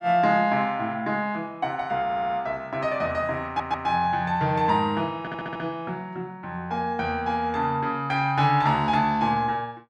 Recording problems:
stutter; at 2 s, at 3.5 s and at 5 s

